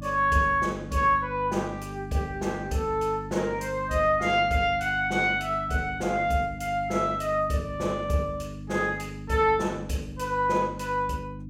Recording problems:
hum; 50 Hz, harmonics up to 300 Hz, SNR 13 dB

